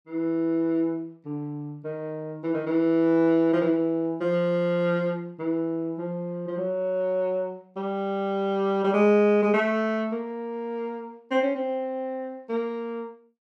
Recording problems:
none

